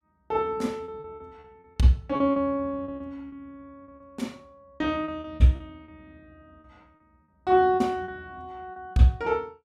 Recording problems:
packet loss; 11% of the sound replaced, filled with repeated pitch periods

